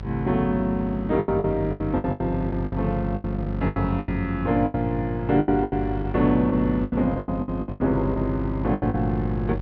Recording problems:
electrical hum; 50 Hz, harmonics up to 750 Hz, SNR 8 dB
packet loss; 16% of the sound replaced, filled with the last packet

